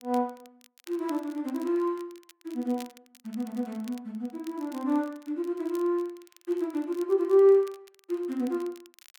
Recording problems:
crackle; vinyl, SNR 25 dB

